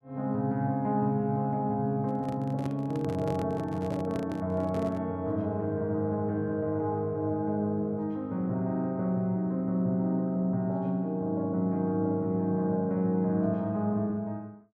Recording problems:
microphone handling noise; from 2 to 5 s; peak -5 dB vs average level

